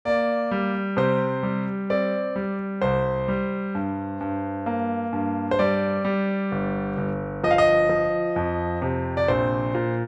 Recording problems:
none

